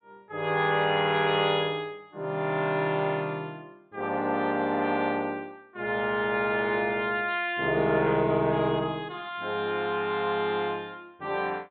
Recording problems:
treble cut off; nothing above 4 kHz

